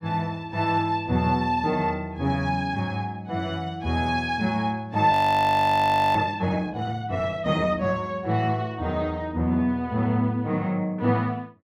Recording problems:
audio freezing; at 5 s for 1 s

